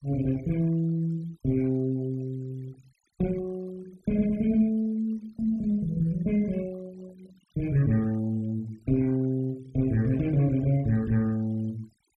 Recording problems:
denoising artefacts; signal-to-artefact ratio 26 dB

